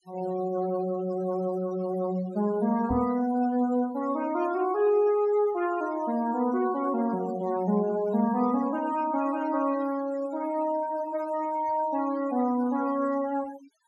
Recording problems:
noise reduction artefacts; signal-to-artefact ratio 19 dB
microphone thump; at 3 s; peak -1 dB vs average level

